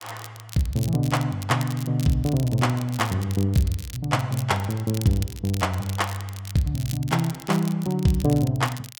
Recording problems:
crackling; vinyl, SNR 16 dB

